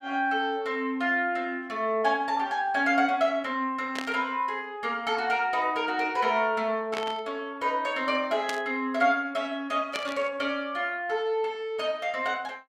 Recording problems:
burst of static; 4 times, first at 4 s; peak -2 dB vs average level

